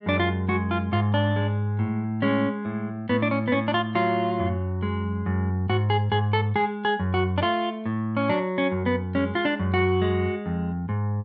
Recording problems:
none

